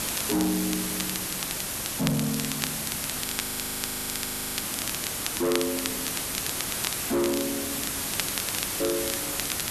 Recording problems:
distortion; soft clipping, signal-to-distortion ratio 6 dB
background hiss; slope -1 dB per octave, SNR 0 dB
crackling; vinyl, SNR 7 dB
frozen audio; at 3.5 s for 1.5 s

